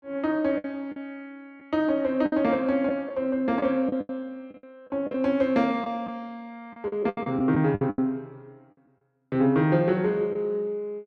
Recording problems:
lost packets; 9% of the sound replaced, filled with the last packet

